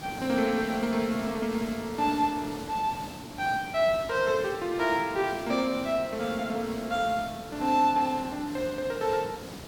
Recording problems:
hiss; slope -4 dB per octave, SNR 13 dB

